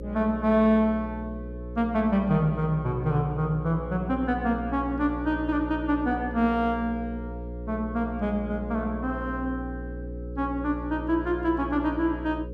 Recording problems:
mains hum; 60 Hz, harmonics up to 540 Hz, SNR 9 dB

